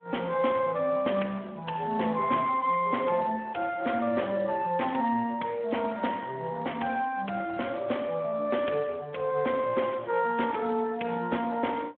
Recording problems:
phone line; 280 Hz to 3.3 kHz, Speex

